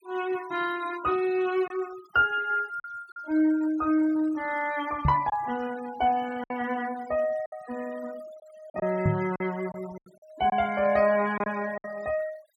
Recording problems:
noise reduction artefacts; signal-to-artefact ratio 19 dB
lost packets; 5% of the sound replaced, filled with silence
microphone bump; at 5 s and at 9 s; peak +5 dB vs average level

